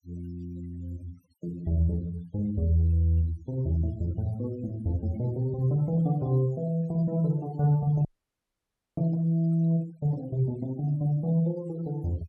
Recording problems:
denoising artefacts; signal-to-artefact ratio 25 dB
frozen audio; at 8 s for 1 s

